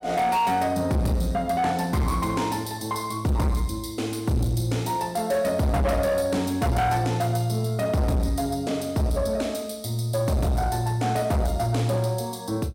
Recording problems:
distortion; soft clipping, signal-to-distortion ratio 8 dB

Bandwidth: 16 kHz